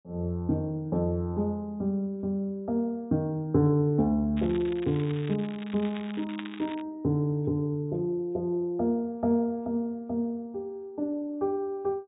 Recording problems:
treble missing; nothing above 4 kHz
crackling; from 4.5 to 7 s; loose cable, SNR 17 dB

